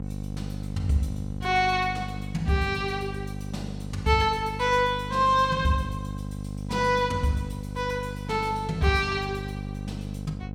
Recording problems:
hum; 50 Hz, harmonics up to 800 Hz, SNR 9 dB

